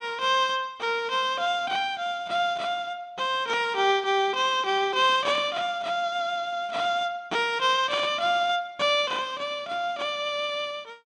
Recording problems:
none

